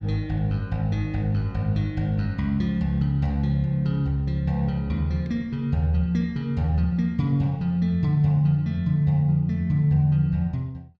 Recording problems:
none

